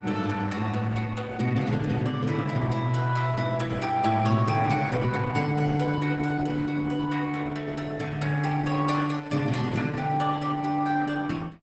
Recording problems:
lossy compression; Opus, log-spectral distance 4 dB, nothing above 8 kHz

